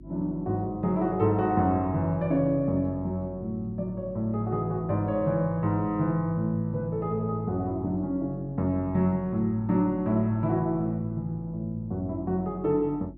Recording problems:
electrical hum; 50 Hz, harmonics up to 350 Hz, SNR 19 dB

